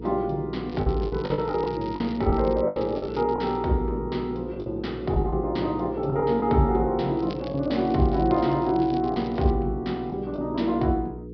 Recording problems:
low-pass filter; nothing above 5.5 kHz
hum; 60 Hz, harmonics up to 480 Hz, SNR 12 dB
lost packets; 7% of the sound replaced, filled with the last packet
crackling; from 0.5 to 3.5 s and from 7 to 9.5 s; loose cable, SNR 24 dB

